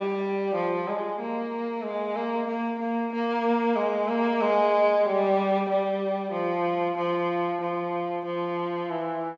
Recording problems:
treble cut off; nothing above 8 kHz

